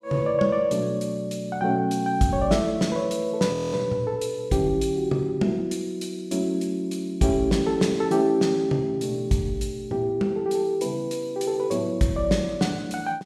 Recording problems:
frozen audio; at 3.5 s

